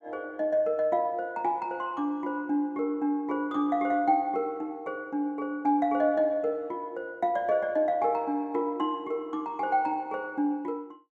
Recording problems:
none

